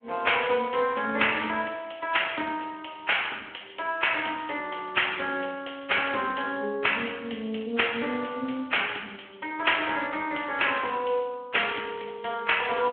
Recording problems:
telephone audio; 260 Hz to 3.3 kHz, Speex

